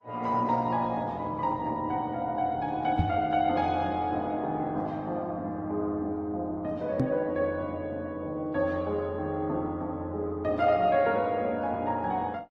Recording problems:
codec artefacts; Opus, then AAC, log-spectral distance 2 dB
microphone bump; at 3 s and at 7 s; peak +6 dB vs average level

